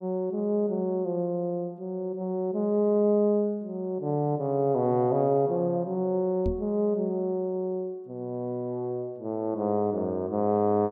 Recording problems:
microphone thump; at 6.5 s; peak 0 dB vs average level

